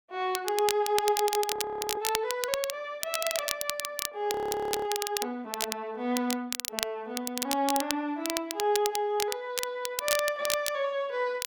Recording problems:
crackling; vinyl, SNR 3 dB
frozen audio; at 1.5 s and at 4.5 s for 0.5 s

